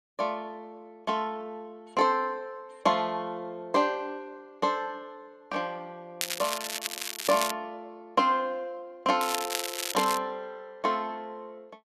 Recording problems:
crackle; from 6 to 7.5 s and at 9 s; loose cable, SNR 3 dB

